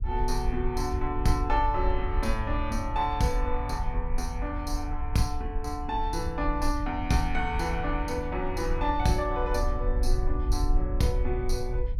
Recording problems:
low-frequency rumble; below 56 Hz, SNR 3 dB

